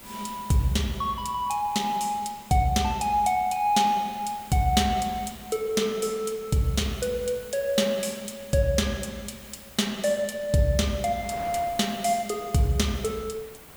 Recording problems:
hiss; SNR 21 dB
wind noise; below 1.4 kHz, SNR 24 dB

